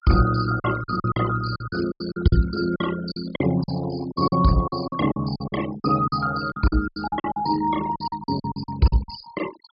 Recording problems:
treble cut off; nothing above 5.5 kHz
noise reduction artefacts; signal-to-artefact ratio 13 dB
lost packets; 16% of the sound replaced, filled with silence

